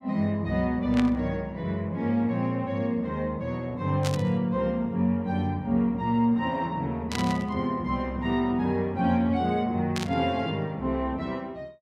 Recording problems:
static burst; 4 times, first at 1 s; peak -1 dB vs average level

